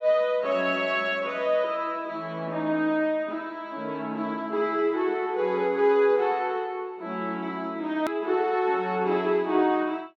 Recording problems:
click at an edit; at 8 s

